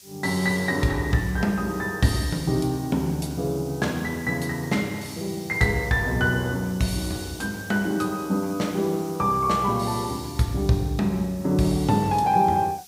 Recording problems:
background hiss; SNR 20 dB

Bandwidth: 15.5 kHz